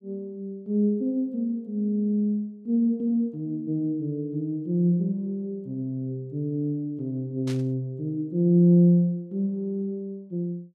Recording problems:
burst of static; at 7.5 s; peak -10 dB vs average level

